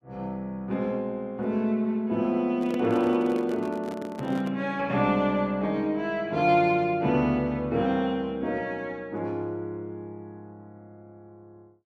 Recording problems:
handling noise; from 2.5 to 4.5 s; peak -6 dB vs average level

